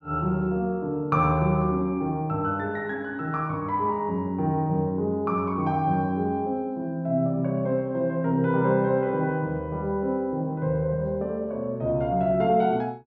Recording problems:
none

